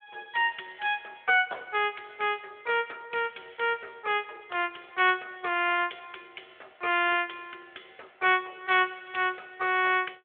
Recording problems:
phone line; 300 Hz to 3.5 kHz, Speex

